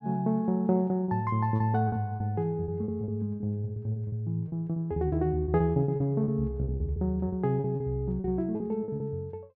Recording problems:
lost packets; 13% of the sound replaced, filled with repeated pitch periods

